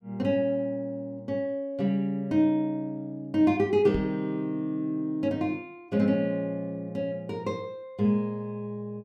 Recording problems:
knock on the microphone; at 4 s; peak -2 dB vs average level

